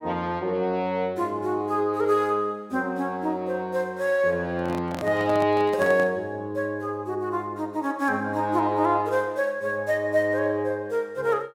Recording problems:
handling noise; from 4.5 to 6 s; peak -4 dB vs average level

